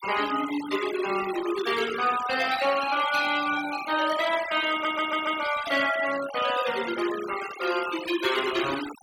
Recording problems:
noise reduction artefacts; signal-to-artefact ratio 11 dB
audio stuttering; at 4.5 s

